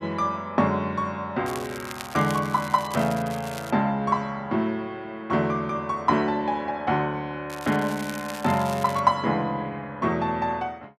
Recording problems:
crackle; from 1.5 to 3.5 s and from 7.5 to 9 s; loose cable, SNR 15 dB

